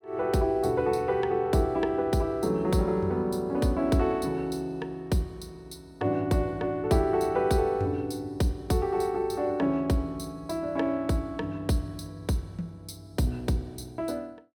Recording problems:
none

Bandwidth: 17 kHz